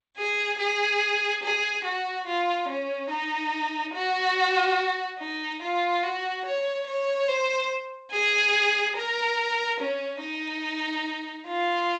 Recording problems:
lossy compression; G.722, log-spectral distance 2 dB, nothing above 7.8 kHz

